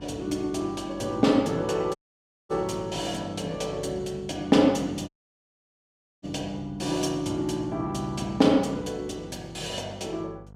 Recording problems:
electrical hum; 50 Hz, harmonics up to 1.1 kHz, SNR 21 dB
audio cutting out; at 2 s for 0.5 s and at 5 s for 1 s

